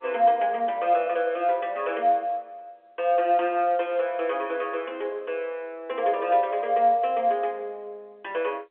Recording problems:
phone line; 280 Hz to 3.4 kHz, G.711

